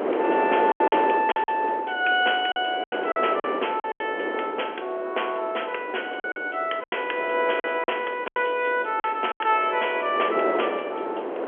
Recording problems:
telephone audio; 320 Hz to 3.3 kHz, G.711
wind noise; below 740 Hz, SNR 6 dB
lost packets; 9% of the sound replaced, filled with silence

